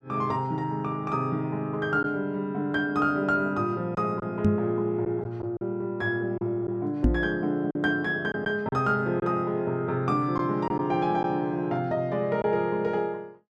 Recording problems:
packet loss; 3% of the sound replaced, filled with silence
microphone thump; at 4.5 s and at 7 s; peak +8 dB vs average level

